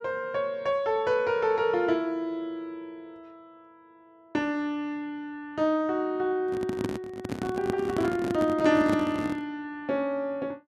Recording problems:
microphone handling noise; from 6.5 to 9.5 s; peak +1 dB vs average level

